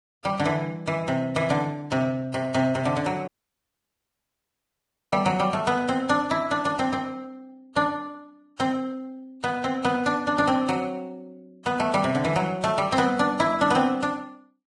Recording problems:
lossy codec; Vorbis, log-spectral distance 2 dB, nothing above 10.4 kHz
dropout; at 3.5 s for 2 s

